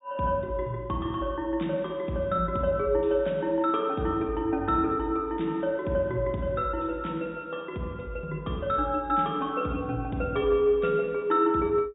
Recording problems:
treble missing; nothing above 4 kHz

